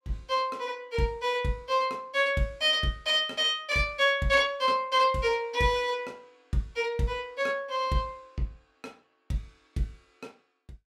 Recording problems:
none

